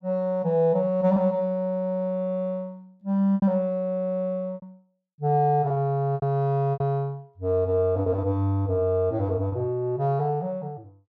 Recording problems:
packet loss; 5% of the sound replaced, filled with repeated pitch periods

